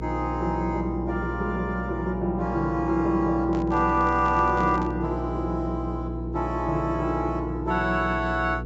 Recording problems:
low-pass filter; nothing above 8 kHz
hum; 60 Hz, harmonics up to 480 Hz, SNR 8 dB
microphone handling noise; from 3.5 to 5 s; peak -7 dB vs average level

